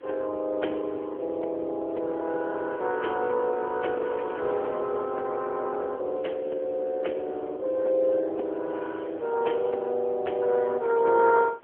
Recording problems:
telephone audio; 280 Hz to 3.4 kHz, AMR-NB
wind on the microphone; below 1.1 kHz, SNR 21 dB

